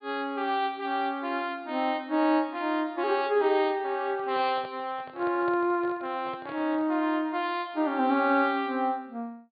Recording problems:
low-pass filter; nothing above 4.7 kHz
handling noise; from 4 to 7 s; peak -10 dB vs average level

